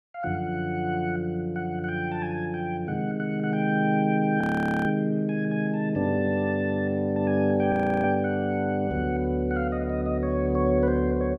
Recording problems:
frozen audio; at 4.5 s and at 7.5 s

